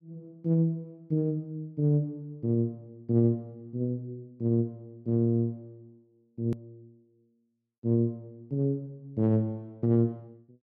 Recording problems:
edit click; at 6.5 s

